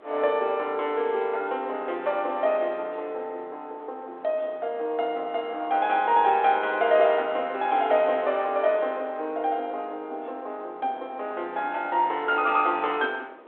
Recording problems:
phone line; 280 Hz to 3.6 kHz, G.726
wind on the microphone; below 990 Hz, SNR 24 dB

